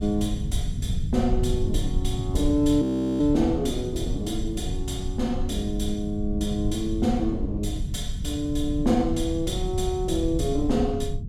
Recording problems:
rumble; below 110 Hz, SNR 4 dB
audio freezing; at 3 s

